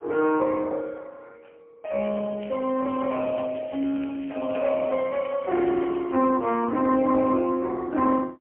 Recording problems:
telephone audio; 220 Hz to 3.2 kHz, AMR-NB, then MP3
crackle; from 2 to 6 s; loose cable, SNR 25 dB

